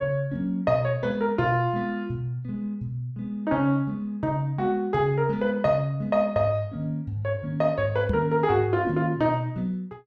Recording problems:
knock on the microphone; at 8 s; peak +2 dB vs average level

